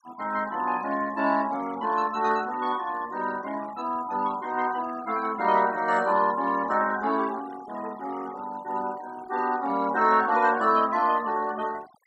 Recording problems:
denoising artefacts; signal-to-artefact ratio 20 dB

